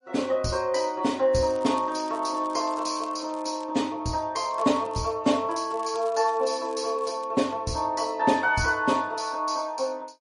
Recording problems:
lossy compression; MP3, log-spectral distance 3 dB, nothing above 10.4 kHz
crackling; from 1.5 to 3.5 s, at 4.5 s and from 5.5 to 7.5 s; loose cable, SNR 25 dB

